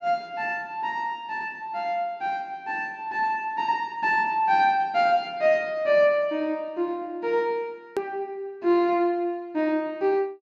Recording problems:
click at an edit; at 8 s

